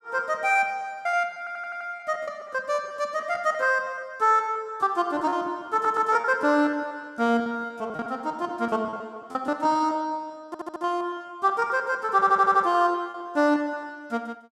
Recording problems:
packet loss; 16% of the sound replaced, filled with repeated pitch periods
stutter; 4 times, first at 1.5 s

